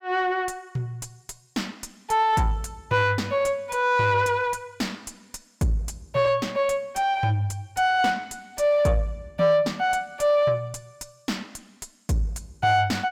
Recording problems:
distortion; soft clipping, signal-to-distortion ratio 10 dB

